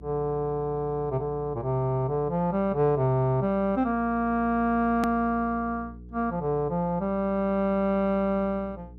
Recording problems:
hum; 60 Hz, harmonics up to 480 Hz, SNR 19 dB
hard cut with a click; at 5 s

